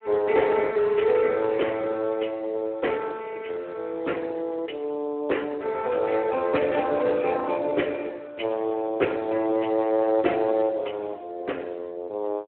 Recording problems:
telephone audio; 300 Hz to 3.3 kHz, Speex

